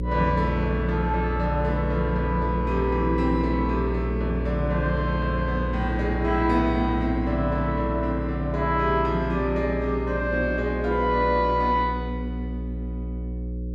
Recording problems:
mains hum; 60 Hz, harmonics up to 540 Hz, SNR 4 dB

